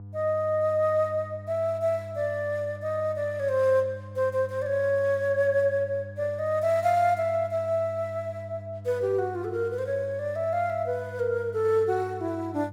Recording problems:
mains hum; 50 Hz, harmonics up to 500 Hz, SNR 15 dB

